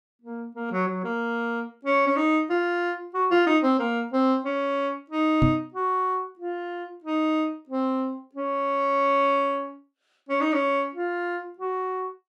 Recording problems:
microphone thump; at 5.5 s; peak +6 dB vs average level

